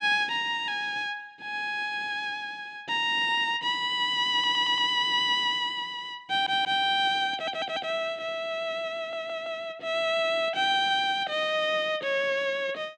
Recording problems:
audio stuttering; 4 times, first at 4.5 s

